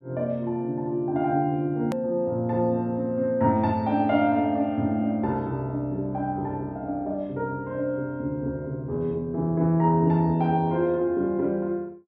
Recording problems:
hard cut with a click; at 2 s

